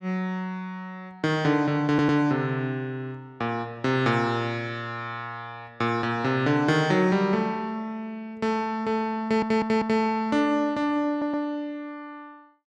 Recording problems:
stutter; at 2 s, at 9 s and at 11 s

